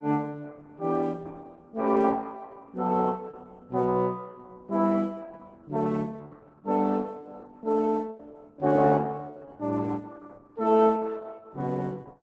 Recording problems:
codec artefacts; Opus, log-spectral distance 3 dB, nothing above 7.8 kHz

